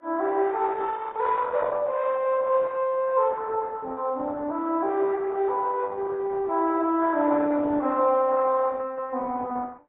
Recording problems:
lossy codec; Opus, then AAC, log-spectral distance 3 dB

